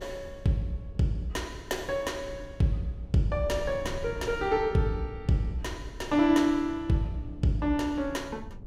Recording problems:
wind noise; below 120 Hz, SNR 15 dB

